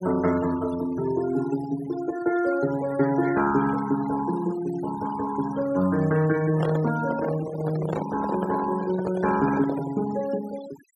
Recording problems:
denoising artefacts; signal-to-artefact ratio 16 dB
microphone handling noise; from 6.5 to 10 s; peak -1 dB vs average level

